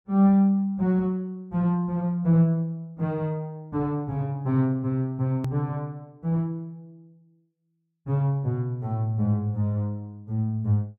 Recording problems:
edit click; at 5.5 s

